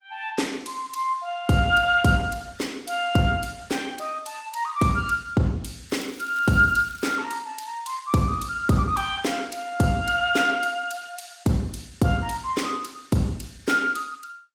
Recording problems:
lossy compression; Opus, log-spectral distance 4 dB, nothing above 19 kHz
crackle; from 6 to 7 s; loose cable, SNR 21 dB

